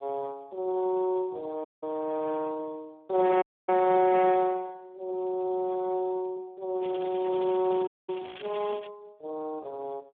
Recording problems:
telephone audio; 320 Hz to 2.9 kHz, Speex
audio cutting out; at 1.5 s, at 3.5 s and at 8 s
crackle; from 7 to 9 s; loose cable, SNR 18 dB

